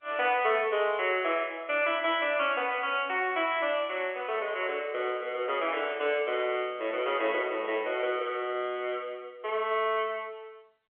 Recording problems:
telephone audio; 300 Hz to 3.4 kHz, G.711

